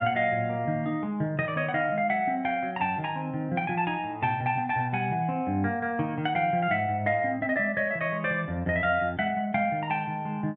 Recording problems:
none

